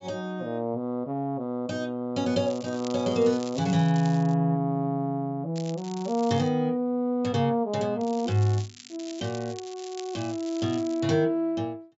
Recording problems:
treble missing; nothing above 8 kHz
crackle; from 2.5 to 4.5 s, at 5.5 s and from 8 to 11 s; loose cable, SNR 18 dB

